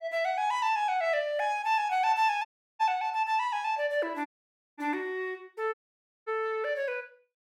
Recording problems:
dropout; at 2.5 s, at 4.5 s for 0.5 s and at 5.5 s for 0.5 s

